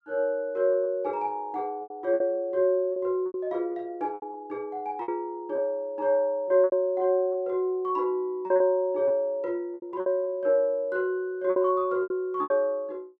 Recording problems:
packet loss; 9% of the sound replaced, filled with repeated pitch periods

